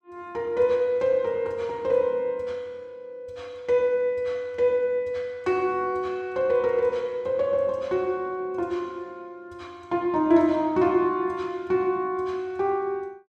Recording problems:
none

